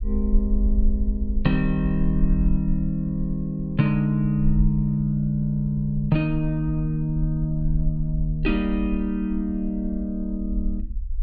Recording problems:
low-frequency rumble; below 50 Hz, SNR 6 dB

